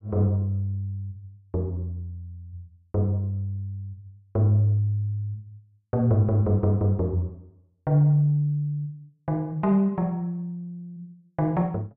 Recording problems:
none

